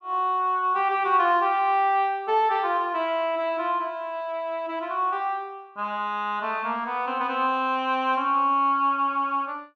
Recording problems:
none

